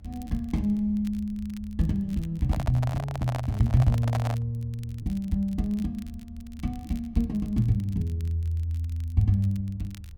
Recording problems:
rumble; below 80 Hz, strongest tone 78 Hz, SNR 16 dB
crackling; vinyl, SNR 28 dB
microphone handling noise; from 2.5 to 4.5 s; peak -1 dB vs average level

